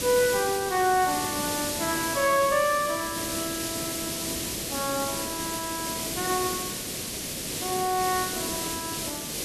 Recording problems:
hiss; SNR 2 dB

